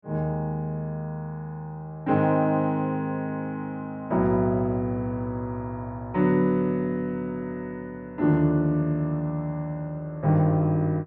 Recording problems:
none

